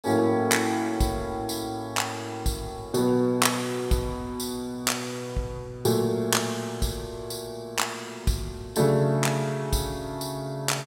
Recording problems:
none

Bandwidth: 16 kHz